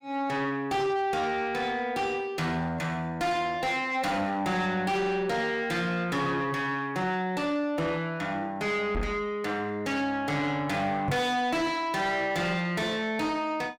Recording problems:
distorted audio; soft clipping, signal-to-distortion ratio 7 dB
microphone bump; at 9 s and at 11 s; peak +3 dB vs average level

